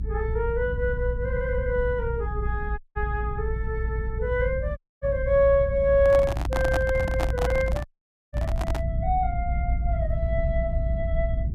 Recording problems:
rumble; below 86 Hz, strongest tone 56 Hz, SNR 3 dB
dropout; at 3 s, at 5 s and at 8 s
handling noise; from 6 to 9 s; peak 0 dB vs average level

